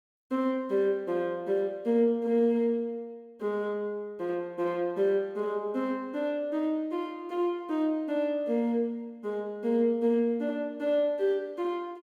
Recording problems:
none

